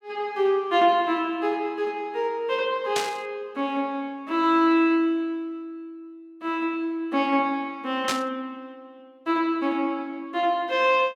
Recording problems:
static burst; at 3 s and at 8 s; peak +2 dB vs average level

